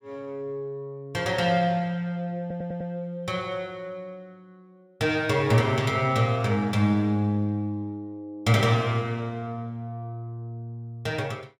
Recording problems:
audio stuttering; at 2.5 s

